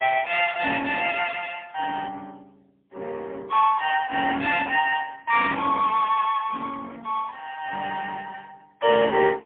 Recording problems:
telephone audio; 300 Hz to 3.3 kHz, AMR-NB, then MP3

